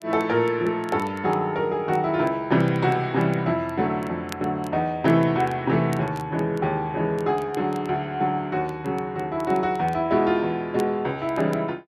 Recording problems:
crackle; vinyl, SNR 26 dB

